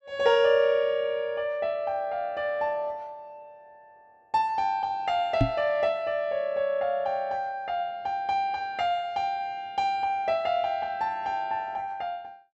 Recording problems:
microphone bump; at 5.5 s; peak +7 dB vs average level

